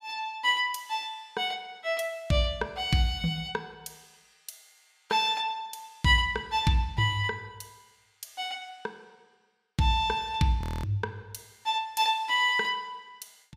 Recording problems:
audio freezing; at 11 s

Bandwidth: 15.5 kHz